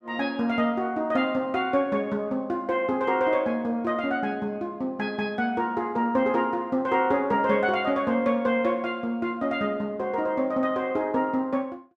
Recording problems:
none

